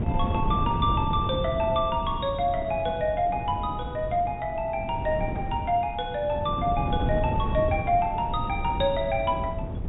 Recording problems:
treble cut off; nothing above 4 kHz
wind noise; below 210 Hz, SNR 5 dB

